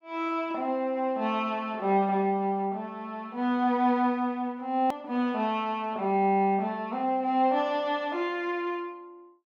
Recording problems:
edit click; at 5 s

